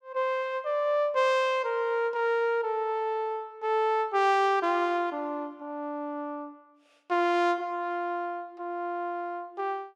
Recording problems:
none

